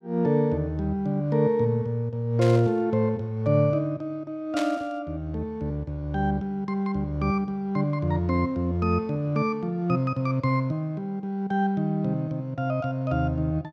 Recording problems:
burst of static; at 2.5 s and at 4.5 s; peak -3 dB vs average level

